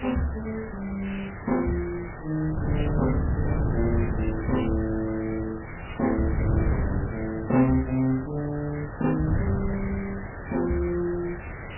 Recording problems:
lossy compression; MP3, log-spectral distance 16 dB, nothing above 2.9 kHz
background hiss; SNR 12 dB
wind noise; below 180 Hz, SNR 4 dB
crackling; from 6.5 to 9 s; loose cable, SNR 27 dB

